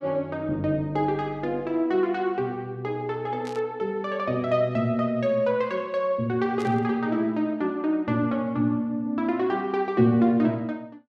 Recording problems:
static burst; at 3.5 s and at 6.5 s; peak -13 dB vs average level

